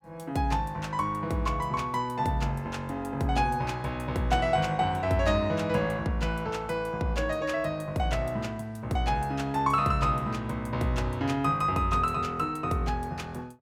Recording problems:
none

